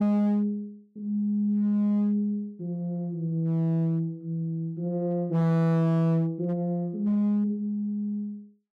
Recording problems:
distorted audio; hard clipping, signal-to-distortion ratio 11 dB

